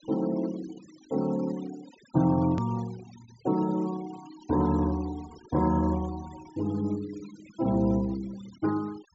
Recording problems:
treble cut off; nothing above 8 kHz
noise reduction artefacts; signal-to-artefact ratio 20 dB
click at an edit; at 2.5 s

